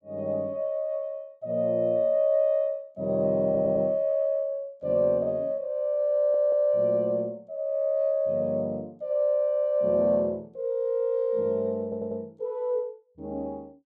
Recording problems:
stutter; at 3.5 s, at 6 s and at 12 s

